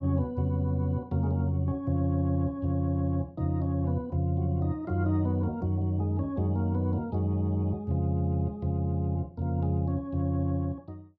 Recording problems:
none

